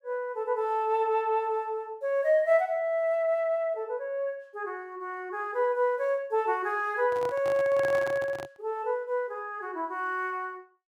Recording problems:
handling noise; from 7 to 8.5 s; peak -5 dB vs average level

